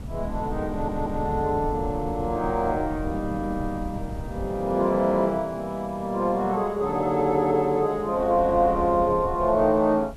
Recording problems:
background hiss; SNR 28 dB
wind noise; below 150 Hz, SNR 13 dB
audio stuttering; at 0.5 s

